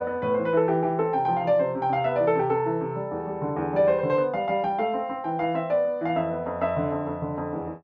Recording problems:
none

